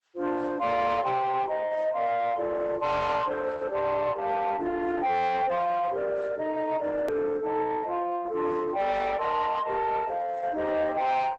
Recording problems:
lossy compression; Opus, log-spectral distance 2 dB
distortion; soft clipping, signal-to-distortion ratio 11 dB
hard cut with a click; at 7 s

